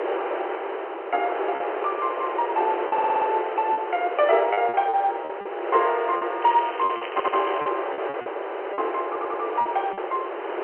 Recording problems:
telephone audio; 320 Hz to 3.1 kHz, G.711
wind on the microphone; below 1 kHz, SNR 5 dB
packet loss; 7% of the sound replaced, filled with repeated pitch periods
stutter; at 3 s, at 7 s and at 9 s
crackle; from 6.5 to 7.5 s; loose cable, SNR 14 dB

